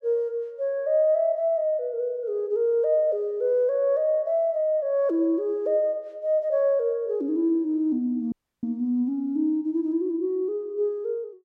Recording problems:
dropout; at 8.5 s

